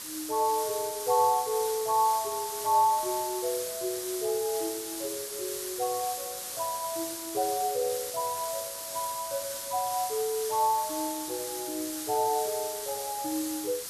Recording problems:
hiss; slope +1 dB per octave, SNR 5 dB

